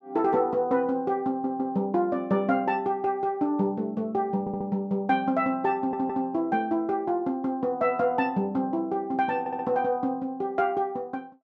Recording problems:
audio stuttering; 4 times, first at 1.5 s

